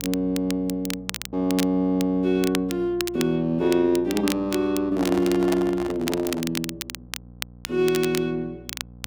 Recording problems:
hum; 60 Hz, harmonics up to 780 Hz, SNR 22 dB
crackle; vinyl, SNR 11 dB
handling noise; from 5 to 6.5 s; peak -3 dB vs average level

